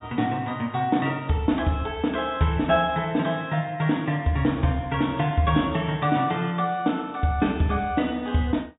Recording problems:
treble cut off; nothing above 4 kHz

